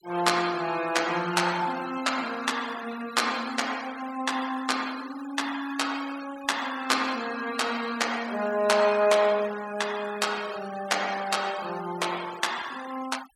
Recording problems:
denoising artefacts; signal-to-artefact ratio 15 dB

